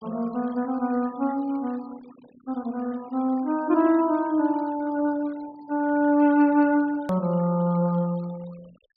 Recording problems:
treble missing; nothing above 4.9 kHz
noise reduction artefacts; signal-to-artefact ratio 26 dB
edit click; at 7 s

